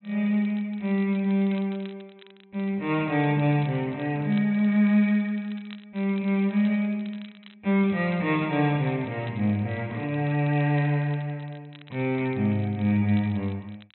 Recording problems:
low-pass filter; nothing above 4 kHz
crackling; vinyl, SNR 27 dB

